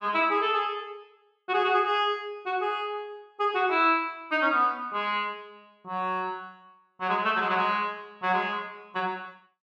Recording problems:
none

